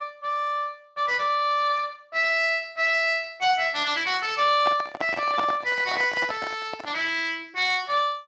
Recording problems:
lossy codec; Speex, log-spectral distance 4 dB
microphone handling noise; from 4.5 to 7 s; peak -1 dB vs average level

